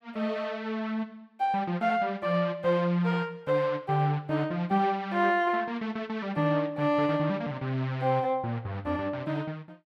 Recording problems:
none

